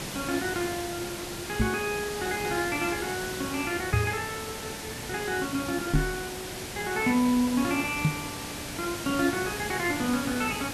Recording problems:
hiss; slope -3 dB per octave, SNR 6 dB
microphone thump; 4 times, first at 1.5 s; peak +8 dB vs average level

